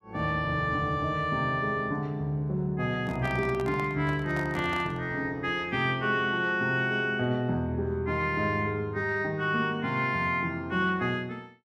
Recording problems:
microphone handling noise; from 3 to 5 s; peak -7 dB vs average level

